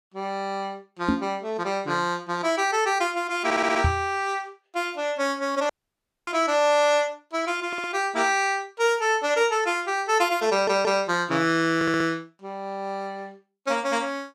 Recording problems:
microphone bump; at 1 s, at 4 s and at 6.5 s; peak +5 dB vs average level
stutter; 4 times, first at 3.5 s
audio cutting out; at 5.5 s for 0.5 s

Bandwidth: 14.5 kHz